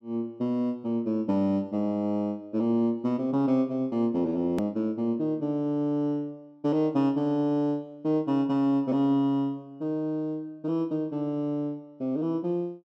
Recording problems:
hard cut with a click; at 4.5 s

